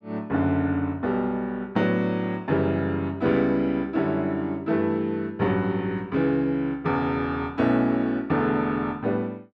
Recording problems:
none

